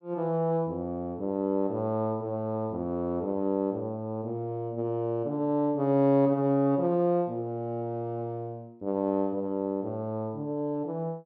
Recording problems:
none

